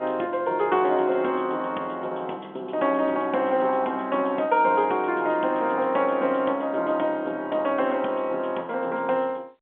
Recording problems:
telephone audio; 280 Hz to 3.4 kHz, G.711

